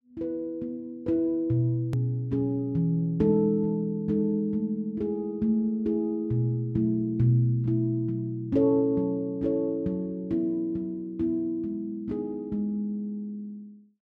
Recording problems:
click at an edit; at 2 s

